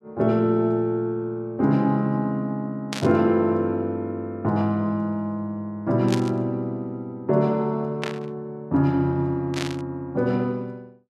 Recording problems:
burst of static; 4 times, first at 3 s; peak -2 dB vs average level

